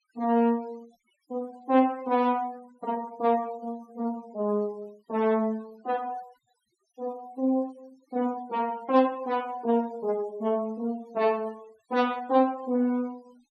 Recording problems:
denoising artefacts; signal-to-artefact ratio 27 dB

